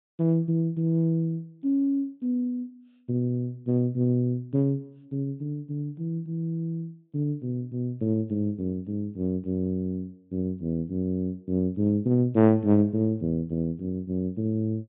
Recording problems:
treble missing; nothing above 4 kHz

